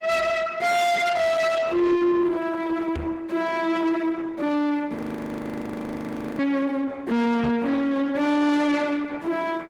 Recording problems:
lossy codec; Opus, log-spectral distance 3 dB
distortion; soft clipping, signal-to-distortion ratio 8 dB
knock on the microphone; at 3 s and at 7.5 s; peak 0 dB vs average level
frozen audio; at 5 s for 1.5 s

